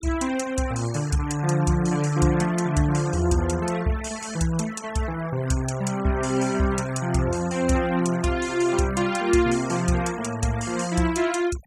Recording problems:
denoising artefacts; signal-to-artefact ratio 17 dB

